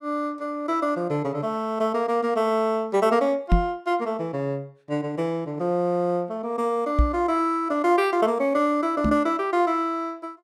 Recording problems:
knock on the microphone; at 3.5 s, at 7 s and at 9 s; peak +7 dB vs average level

